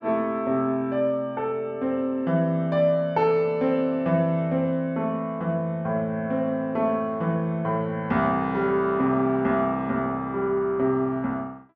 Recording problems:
none

